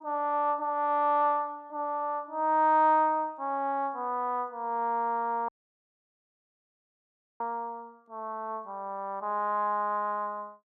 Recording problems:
audio cutting out; at 5.5 s for 2 s

